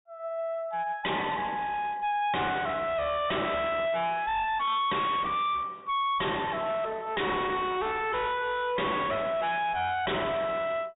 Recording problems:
low-pass filter; nothing above 4 kHz
distorted audio; hard clipping, uneven, signal-to-distortion ratio 5 dB

